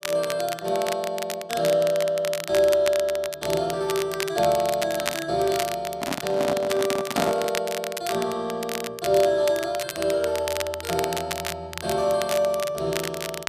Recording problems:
crackling; vinyl, SNR 9 dB
handling noise; from 6 to 7.5 s; peak +3 dB vs average level

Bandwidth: 14.5 kHz